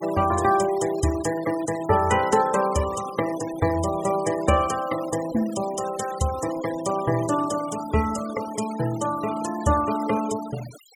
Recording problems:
noise reduction artefacts; signal-to-artefact ratio 15 dB

